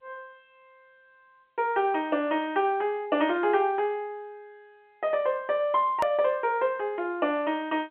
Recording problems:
telephone audio; 300 Hz to 3.5 kHz, G.711
click at an edit; at 6 s

